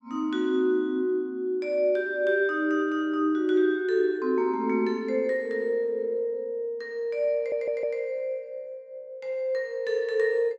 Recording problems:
audio stuttering; at 7.5 s

